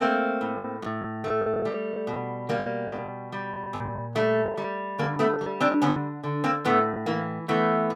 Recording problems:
packet loss; 10% of the sound replaced, filled with the last packet

